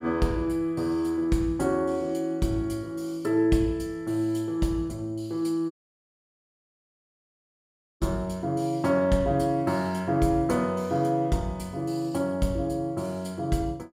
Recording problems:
audio cutting out; at 5.5 s for 2.5 s

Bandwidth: 16 kHz